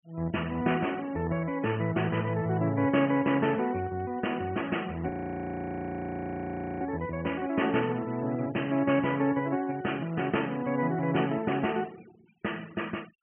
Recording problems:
treble cut off; nothing above 3.1 kHz
denoising artefacts; signal-to-artefact ratio 22 dB
audio freezing; at 5 s for 1.5 s

